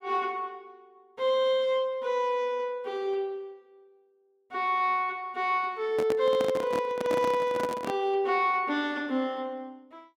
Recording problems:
handling noise; from 6 to 8 s; peak -1 dB vs average level

